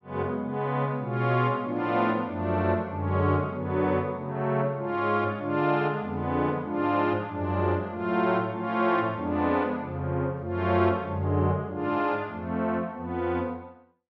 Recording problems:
none

